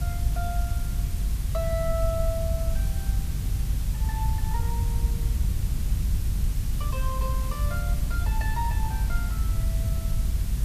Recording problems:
hiss; slope 0 dB per octave, SNR 6 dB
low-frequency rumble; below 86 Hz, SNR -8 dB
crackling; at 6 s; loose cable, SNR 27 dB

